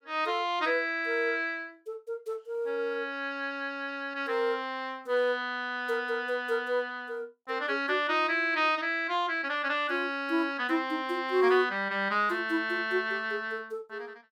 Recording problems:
none

